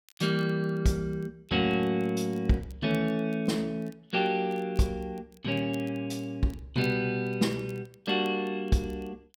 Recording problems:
crackling; vinyl, SNR 30 dB

